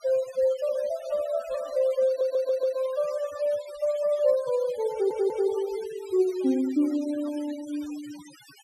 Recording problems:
noise reduction artefacts; signal-to-artefact ratio 20 dB
audio stuttering; at 2 s and at 5 s

